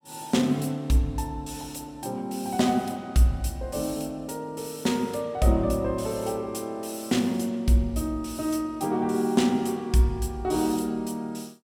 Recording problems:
none

